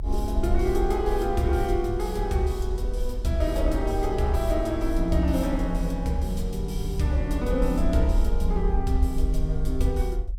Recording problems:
rumble; below 52 Hz, SNR 3 dB

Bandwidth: 17 kHz